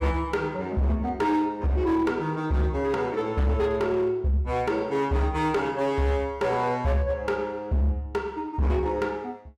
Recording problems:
distortion; hard clipping, signal-to-distortion ratio 12 dB

